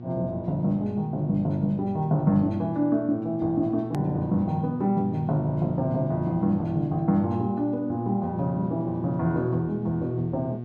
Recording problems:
hum; 60 Hz, harmonics up to 720 Hz, SNR 11 dB
edit click; at 4 s

